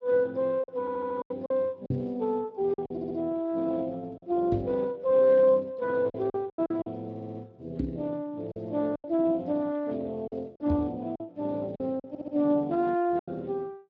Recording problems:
codec artefacts; Speex, log-spectral distance 2 dB
packet loss; 7% of the sound replaced, filled with silence
audio stuttering; 4 times, first at 1 s
microphone bump; 4 times, first at 2 s; peak +2 dB vs average level

